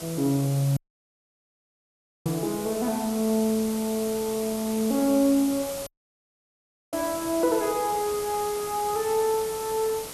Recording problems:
hiss; SNR 10 dB
dropout; at 1 s for 1.5 s and at 6 s for 1 s

